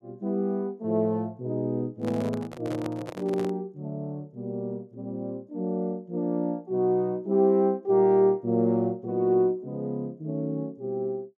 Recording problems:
microphone handling noise; from 2 to 3.5 s; peak -5 dB vs average level

